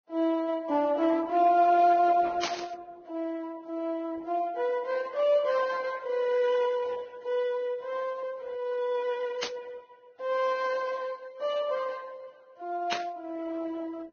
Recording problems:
codec artefacts; Opus, then Vorbis, log-spectral distance 3 dB
static burst; at 2.5 s, at 9.5 s and at 13 s; peak +1 dB vs average level

